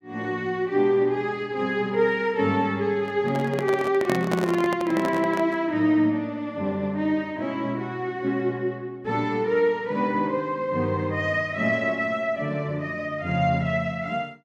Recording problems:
handling noise; from 3 to 5.5 s; peak +1 dB vs average level

